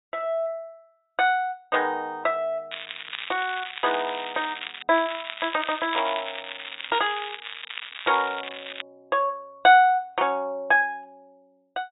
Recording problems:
treble missing; nothing above 4 kHz
crackling; from 2.5 to 5 s and from 5 to 9 s; loose cable, SNR 10 dB

